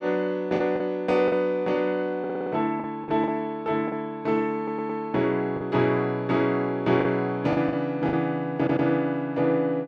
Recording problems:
lost packets; 5% of the sound replaced, filled with the last packet
stutter; at 2 s, at 4.5 s and at 8.5 s

